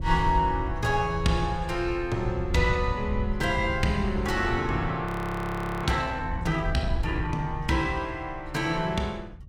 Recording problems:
wind noise; below 92 Hz, SNR 8 dB
audio freezing; at 5 s for 1 s

